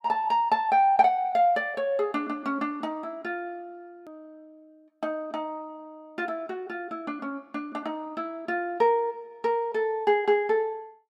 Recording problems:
click at an edit; at 4 s

